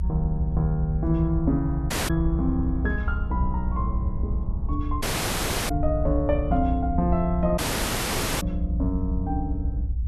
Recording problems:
rumble; below 72 Hz, strongest tone 58 Hz, SNR 2 dB
dropout; at 2 s, at 5 s for 0.5 s and at 7.5 s for 1 s

